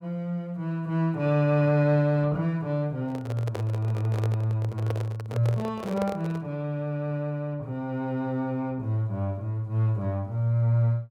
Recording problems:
handling noise; from 3 to 6.5 s; peak -2 dB vs average level

